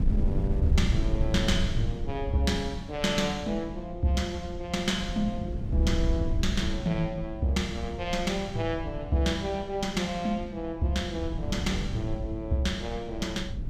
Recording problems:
wind on the microphone; below 110 Hz, SNR 4 dB

